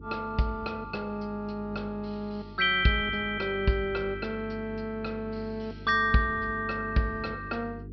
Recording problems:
low-pass filter; nothing above 5.5 kHz
electrical hum; 50 Hz, harmonics up to 450 Hz, SNR 15 dB

